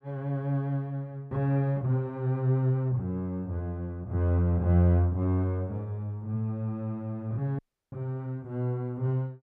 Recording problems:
audio cutting out; at 7.5 s

